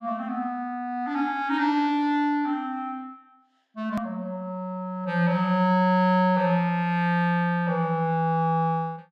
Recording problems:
hard cut with a click; at 4 s

